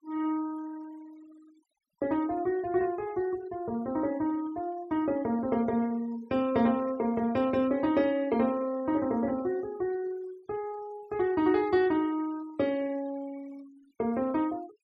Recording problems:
denoising artefacts; signal-to-artefact ratio 24 dB

